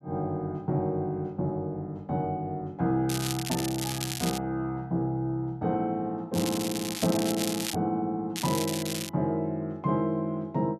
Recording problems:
crackling; from 3 to 4.5 s, from 6.5 to 8 s and at 8.5 s; loose cable, SNR 5 dB

